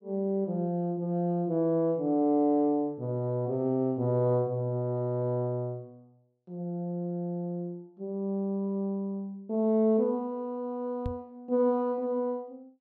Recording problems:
microphone thump; at 11 s; peak -2 dB vs average level

